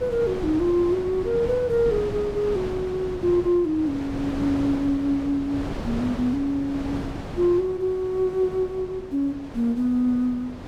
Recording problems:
wind on the microphone; below 570 Hz, SNR 10 dB

